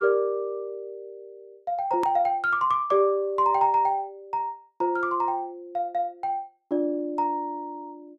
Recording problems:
hard cut with a click; at 2 s

